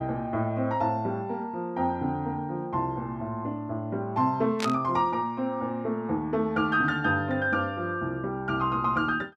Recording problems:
burst of static; at 4.5 s; peak +1 dB vs average level

